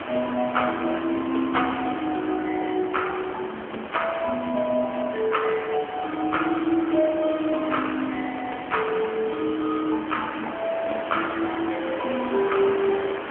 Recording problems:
phone line; 260 Hz to 3.3 kHz, AMR-NB
background hiss; SNR 9 dB

